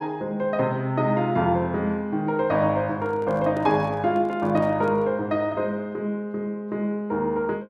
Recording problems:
handling noise; from 3 to 5 s; peak -8 dB vs average level

